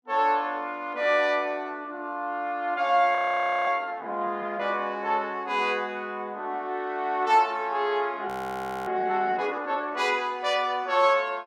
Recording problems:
frozen audio; at 3 s for 0.5 s and at 8.5 s for 0.5 s

